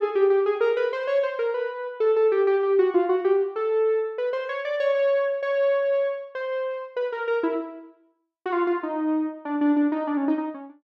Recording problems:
none

